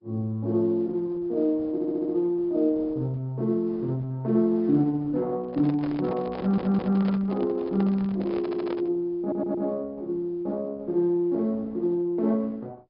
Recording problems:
low-pass filter; nothing above 5.2 kHz
lossy compression; Opus, log-spectral distance 2 dB
stutter; 4 times, first at 1.5 s
microphone handling noise; from 5.5 to 9 s; peak -6 dB vs average level

